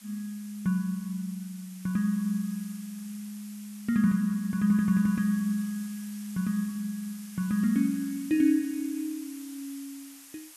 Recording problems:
hiss; slope +2 dB per octave, SNR 18 dB

